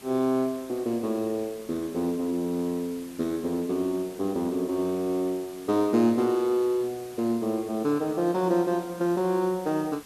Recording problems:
hiss; slope -2 dB per octave, SNR 20 dB

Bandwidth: 13.5 kHz